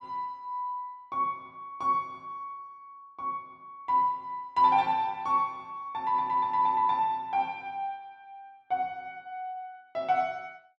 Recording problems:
none

